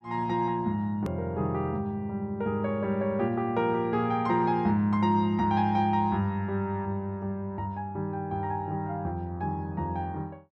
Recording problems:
hard cut with a click; at 1 s

